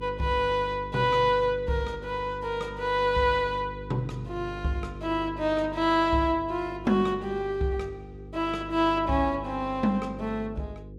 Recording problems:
hum; 50 Hz, harmonics up to 500 Hz, SNR 14 dB

